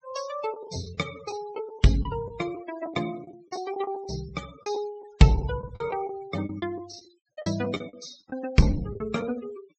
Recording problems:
treble missing; nothing above 7.9 kHz
noise reduction artefacts; signal-to-artefact ratio 18 dB
packet loss; 10% of the sound replaced, filled with the last packet

